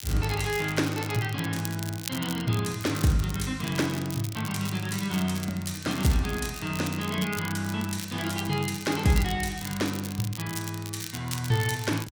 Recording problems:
crackle; vinyl, SNR 11 dB

